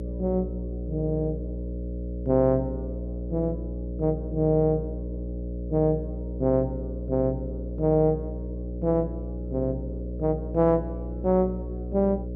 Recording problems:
electrical hum; 60 Hz, harmonics up to 600 Hz, SNR 7 dB

